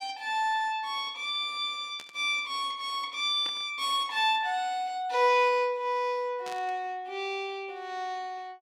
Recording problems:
static burst; at 2 s, at 3.5 s and at 6.5 s; peak -9 dB vs average level

